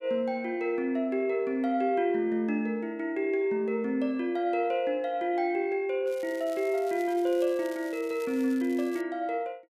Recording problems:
crackling; from 6 to 9 s; loose cable, SNR 22 dB

